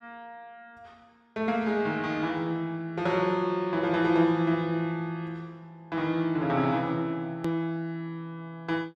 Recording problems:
click at an edit; at 7.5 s

